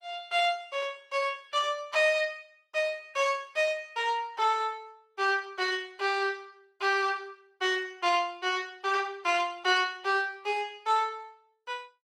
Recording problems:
codec artefacts; Opus, log-spectral distance 2 dB

